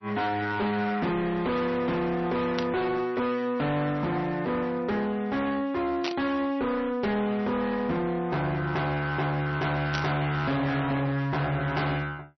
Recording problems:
lossy codec; MP3, log-spectral distance 2 dB, nothing above 5.7 kHz
distorted audio; hard clipping, signal-to-distortion ratio 8 dB
burst of static; at 2.5 s, at 6 s and at 10 s; peak -1 dB vs average level

